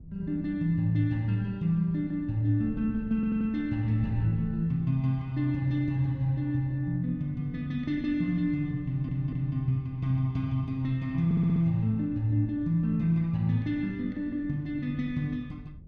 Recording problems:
wind on the microphone; below 140 Hz, SNR 18 dB
stutter; at 3 s, at 9 s and at 11 s

